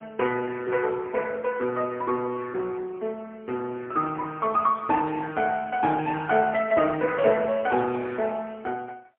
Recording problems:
telephone audio; 220 Hz to 3.3 kHz, AMR-NB, then MP3

